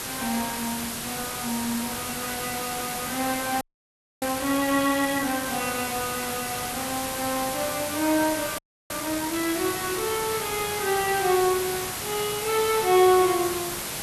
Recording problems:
lossy codec; Vorbis, log-spectral distance 14 dB
hiss; slope -2 dB per octave, SNR 4 dB
frozen audio; at 3.5 s for 0.5 s and at 8.5 s

